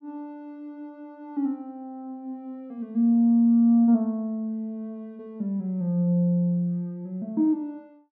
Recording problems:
none

